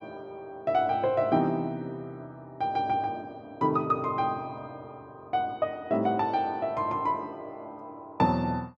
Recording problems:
none

